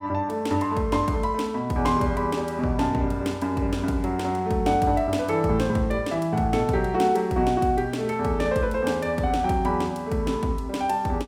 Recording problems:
none

